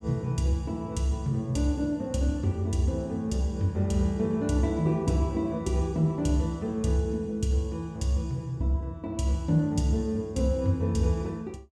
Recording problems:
none

